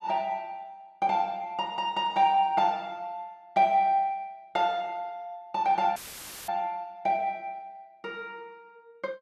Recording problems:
dropout; at 6 s for 0.5 s; filled with static

